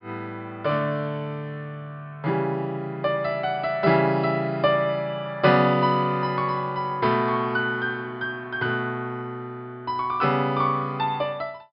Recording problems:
treble cut off; nothing above 5.2 kHz

